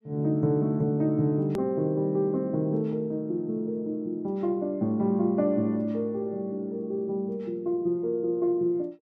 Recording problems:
edit click; at 1.5 s

